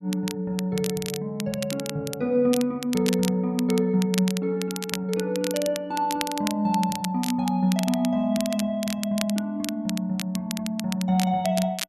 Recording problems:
crackle; vinyl, SNR 10 dB

